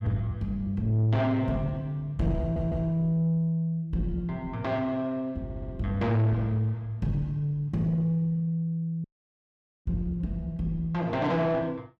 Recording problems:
distorted audio; soft clipping, signal-to-distortion ratio 11 dB
audio stuttering; at 2.5 s and at 5.5 s
dropout; at 9 s for 1 s

